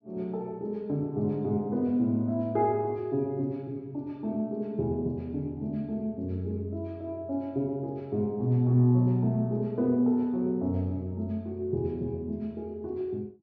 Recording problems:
treble cut off; nothing above 6.3 kHz

